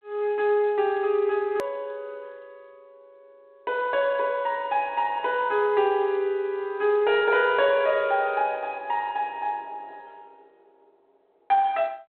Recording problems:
phone line; 300 Hz to 3.8 kHz, G.726
hard cut with a click; at 1.5 s

